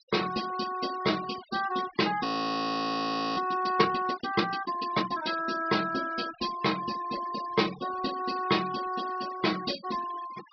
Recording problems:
treble missing; nothing above 5.5 kHz
noise reduction artefacts; signal-to-artefact ratio 15 dB
audio freezing; at 2.5 s for 1 s

